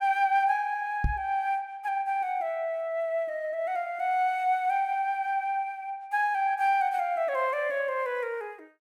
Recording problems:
knock on the microphone; at 1 s; peak +3 dB vs average level

